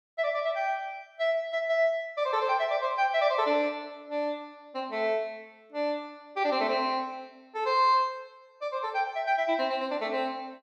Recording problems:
none

